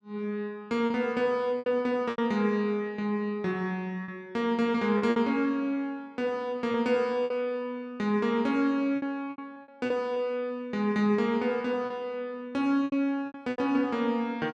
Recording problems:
lost packets; 7% of the sound replaced, filled with repeated pitch periods

